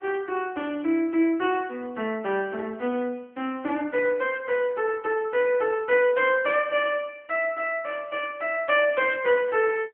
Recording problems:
telephone audio; 260 Hz to 3.4 kHz, AMR-NB

